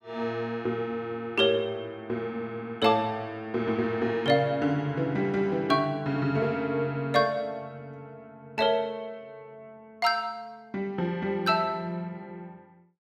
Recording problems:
none

